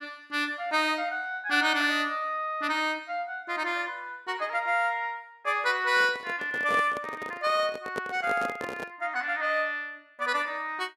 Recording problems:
handling noise; from 6 to 9 s; peak -2 dB vs average level

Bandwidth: 14.5 kHz